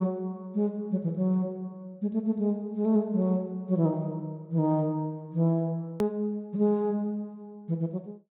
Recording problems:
treble cut off; nothing above 3.9 kHz
edit click; at 6 s

